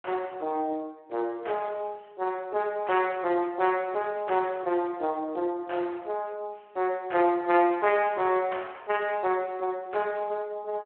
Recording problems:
phone line; 260 Hz to 3.2 kHz, Speex

